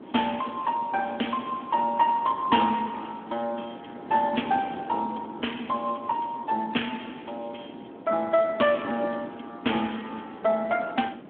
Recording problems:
phone line; 240 Hz to 3.3 kHz, Speex
wind on the microphone; below 490 Hz, SNR 14 dB

